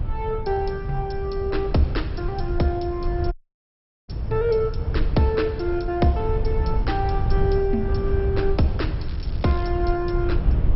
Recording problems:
codec artefacts; MP2, log-spectral distance 2 dB, nothing above 5.5 kHz
rumble; below 86 Hz, SNR 4 dB
wind on the microphone; below 110 Hz, SNR 11 dB
audio cutting out; at 3.5 s for 1 s
crackle; at 9 s; loose cable, SNR 23 dB

